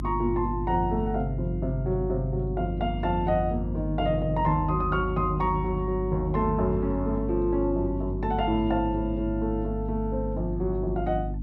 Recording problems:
electrical hum; 50 Hz, harmonics up to 300 Hz, SNR 5 dB

